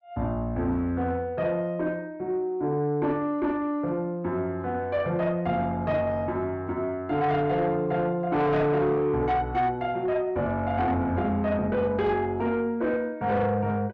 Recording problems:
distortion; soft clipping, signal-to-distortion ratio 11 dB

